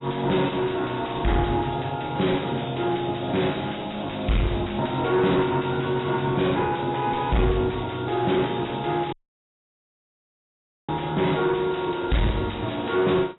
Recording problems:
lossy compression; AAC, log-spectral distance 11 dB, nothing above 3.9 kHz
distorted audio; soft clipping, signal-to-distortion ratio 7 dB
audio cutting out; at 9 s for 2 s

